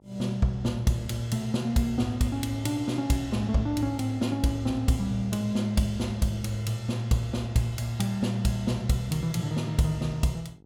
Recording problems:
hum; 50 Hz, harmonics up to 950 Hz, SNR 29 dB

